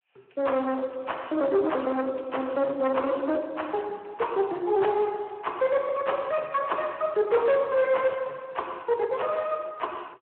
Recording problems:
telephone audio; 280 Hz to 3.3 kHz, Speex
distorted audio; hard clipping, uneven, signal-to-distortion ratio 11 dB

